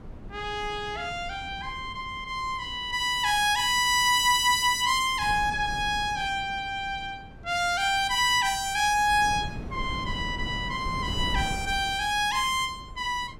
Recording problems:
wind on the microphone; below 230 Hz, SNR 15 dB

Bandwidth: 16.5 kHz